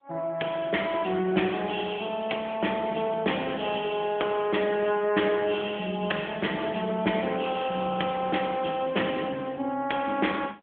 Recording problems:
telephone audio; 220 Hz to 3.4 kHz, AMR-NB

